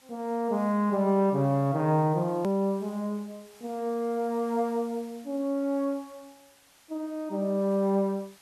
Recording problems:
background hiss; slope 0 dB per octave, SNR 27 dB
hard cut with a click; at 2.5 s

